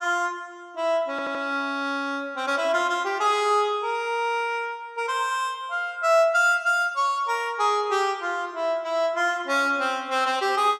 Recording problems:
stutter; at 1 s

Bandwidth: 14.5 kHz